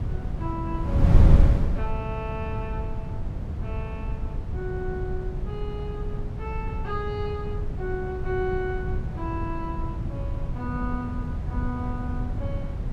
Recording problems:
wind noise; below 120 Hz, SNR -6 dB

